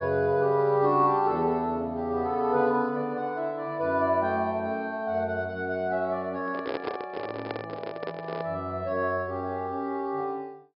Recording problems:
low-pass filter; nothing above 5.2 kHz
handling noise; from 6.5 to 8.5 s; peak +1 dB vs average level

